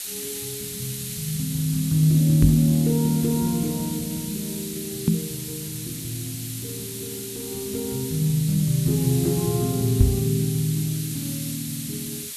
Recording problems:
background hiss; SNR 8 dB
microphone bump; at 2.5 s, at 5 s and at 10 s; peak +9 dB vs average level

